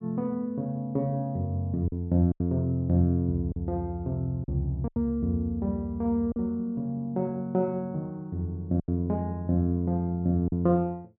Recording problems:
lost packets; 4% of the sound replaced, filled with silence

